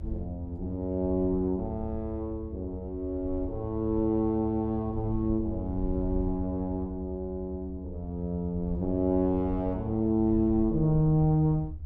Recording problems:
rumble; below 80 Hz, SNR 10 dB

